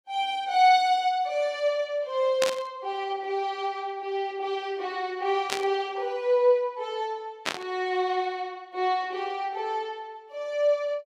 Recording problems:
static burst; at 2.5 s, at 5.5 s and at 7.5 s; peak +4 dB vs average level

